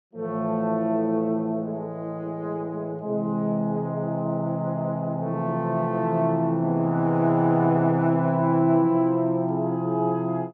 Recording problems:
none

